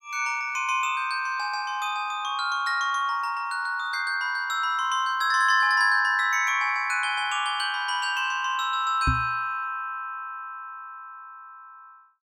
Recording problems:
microphone thump; at 9 s; peak +3 dB vs average level

